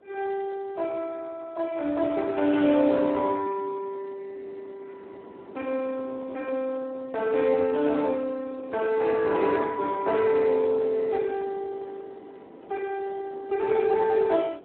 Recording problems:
phone line; 220 Hz to 3 kHz, Speex
wind noise; below 610 Hz, SNR 21 dB

